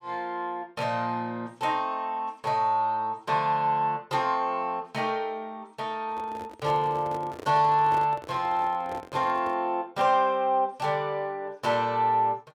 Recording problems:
handling noise; from 6 to 9.5 s; peak -7 dB vs average level

